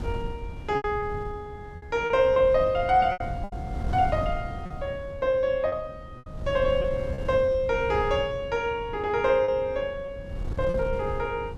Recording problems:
wind on the microphone; below 150 Hz, SNR 11 dB
lost packets; 7% of the sound replaced, filled with repeated pitch periods

